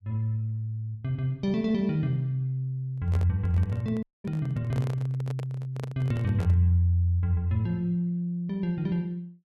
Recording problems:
microphone handling noise; from 3 to 6.5 s; peak -7 dB vs average level
audio cutting out; at 4 s

